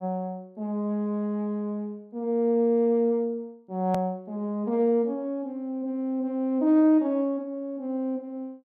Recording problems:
hard cut with a click; at 4 s

